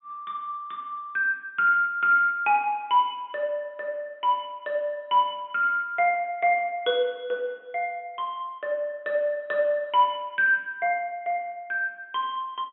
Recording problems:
treble missing; nothing above 3.4 kHz

